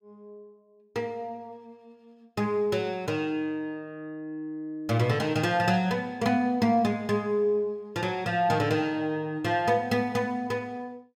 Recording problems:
none

